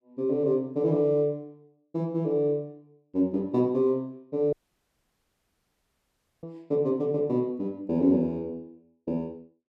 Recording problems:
audio cutting out; at 4.5 s for 2 s

